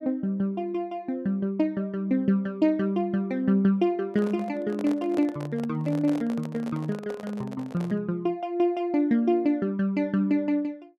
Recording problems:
microphone handling noise; from 4 to 8 s; peak -7 dB vs average level

